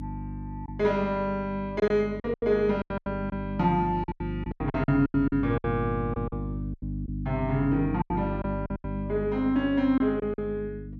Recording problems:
hum; 50 Hz, harmonics up to 300 Hz, SNR 8 dB
lost packets; 12% of the sound replaced, filled with silence

